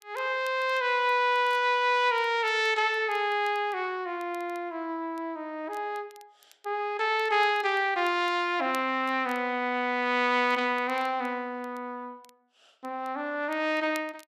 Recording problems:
crackling; vinyl, SNR 29 dB

